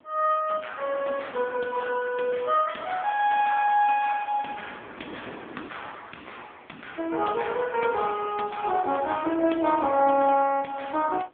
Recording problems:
phone line; 240 Hz to 3.3 kHz, AMR-NB
wind on the microphone; below 1.1 kHz, SNR 20 dB

